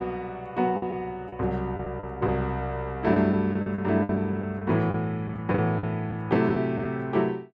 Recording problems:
lost packets; 8% of the sound replaced, filled with the last packet

